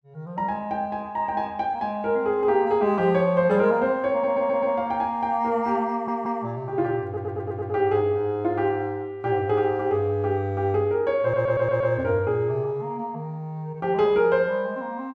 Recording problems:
audio stuttering; 4 times, first at 4 s

